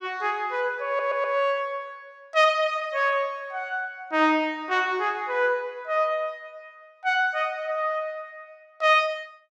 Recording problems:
audio stuttering; at 1 s

